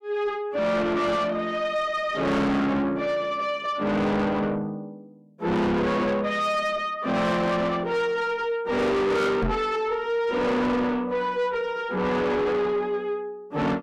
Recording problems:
distorted audio; soft clipping, signal-to-distortion ratio 6 dB
microphone thump; at 9.5 s; peak +2 dB vs average level

